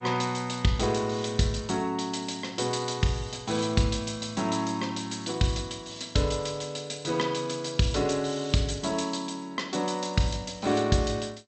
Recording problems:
lossy compression; G.722, log-spectral distance 6 dB, nothing above 8.2 kHz

